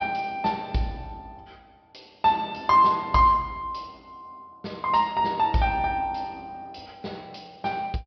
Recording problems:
treble missing; nothing above 5.5 kHz

